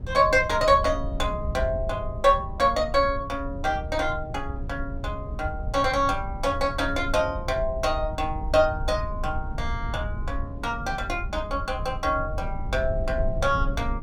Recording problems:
low-frequency rumble; below 90 Hz, SNR 8 dB

